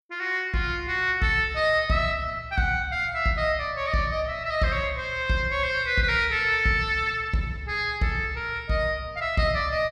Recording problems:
none

